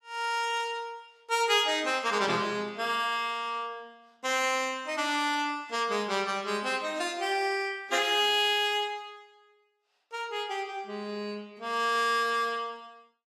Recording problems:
codec artefacts; AAC, log-spectral distance 2 dB

